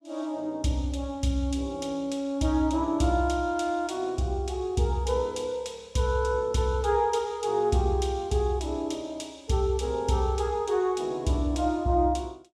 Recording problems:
none

